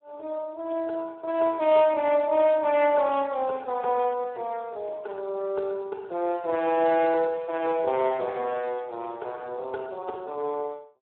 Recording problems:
telephone audio; 300 Hz to 3.7 kHz, Speex

